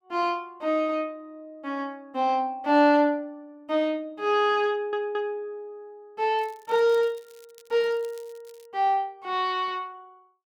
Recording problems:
audio stuttering; at 4.5 s
crackle; from 6.5 to 8.5 s; loose cable, SNR 29 dB

